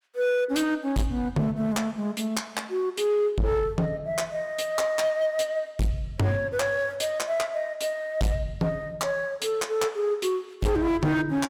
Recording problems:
distorted audio; hard clipping, signal-to-distortion ratio 7 dB

